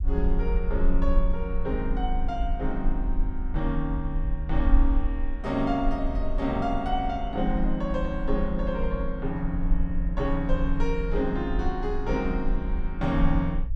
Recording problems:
rumble; below 44 Hz, strongest tone 22 Hz, SNR 2 dB

